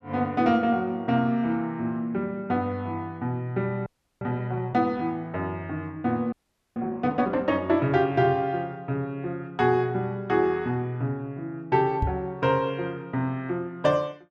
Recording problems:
frozen audio; at 4 s and at 6.5 s
knock on the microphone; at 12 s; peak +3 dB vs average level

